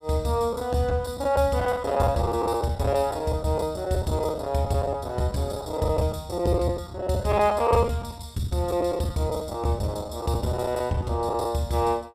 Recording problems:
lost packets; 13% of the sound replaced, filled with the last packet

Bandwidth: 15 kHz